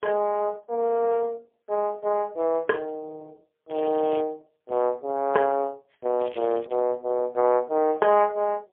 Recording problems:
phone line; 320 Hz to 2.5 kHz, AMR-NB, then MP3
crackle; at 3.5 s and at 6 s; loose cable, SNR 24 dB

